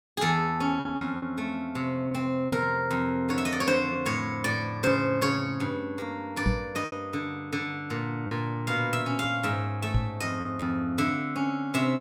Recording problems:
packet loss; 4% of the sound replaced, filled with repeated pitch periods
knock on the microphone; at 2.5 s, at 6.5 s and at 10 s; peak +6 dB vs average level

